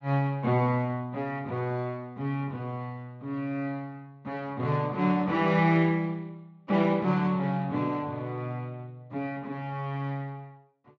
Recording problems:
lossy compression; Speex, log-spectral distance 2 dB

